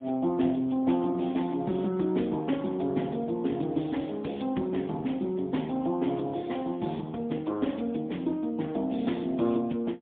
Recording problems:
telephone audio; 110 Hz to 3.6 kHz, AMR-NB, then MP3

